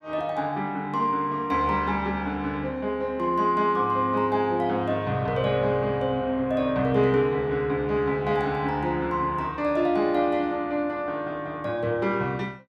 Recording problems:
none

